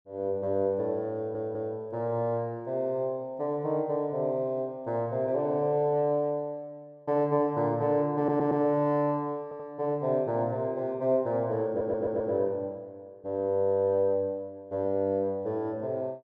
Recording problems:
stutter; 4 times, first at 1 s

